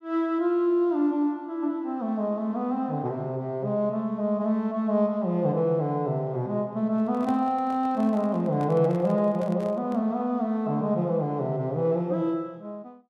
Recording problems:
handling noise; from 7 to 10 s; peak -9 dB vs average level

